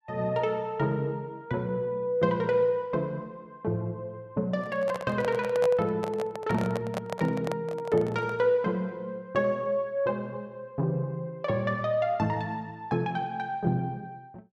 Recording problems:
microphone handling noise; from 4.5 to 8.5 s; peak +1 dB vs average level

